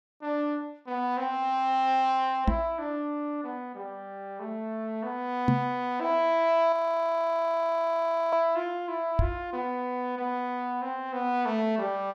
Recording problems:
knock on the microphone; at 2.5 s, at 5.5 s and at 9 s; peak +7 dB vs average level
frozen audio; at 6.5 s for 1.5 s

